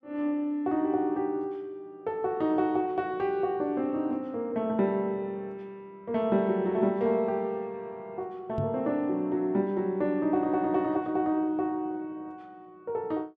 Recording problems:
knock on the microphone; at 8.5 s; peak 0 dB vs average level

